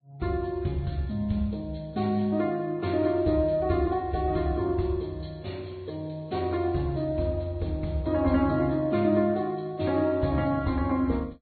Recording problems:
treble missing; nothing above 4.4 kHz
codec artefacts; Vorbis, log-spectral distance 2 dB

